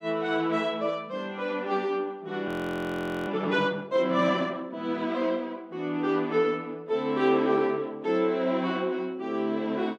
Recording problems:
frozen audio; at 2.5 s for 1 s

